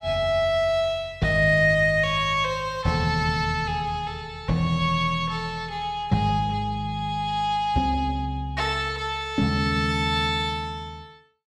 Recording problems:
none

